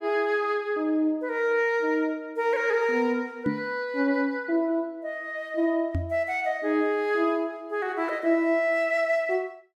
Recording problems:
microphone bump; at 3.5 s and at 6 s; peak +3 dB vs average level

